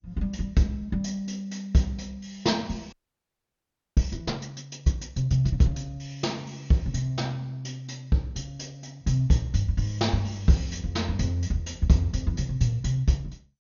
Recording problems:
lossy compression; MP2, log-spectral distance 3 dB, nothing above 6.7 kHz
frozen audio; at 3 s for 1 s

